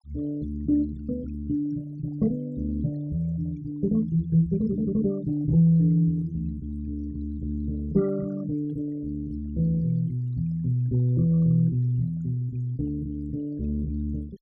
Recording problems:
denoising artefacts; signal-to-artefact ratio 26 dB

